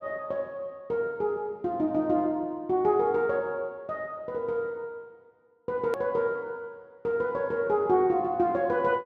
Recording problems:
click at an edit; at 6 s

